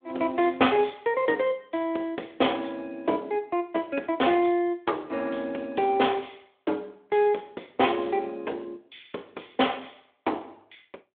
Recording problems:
telephone audio; 280 Hz to 3.5 kHz, Speex

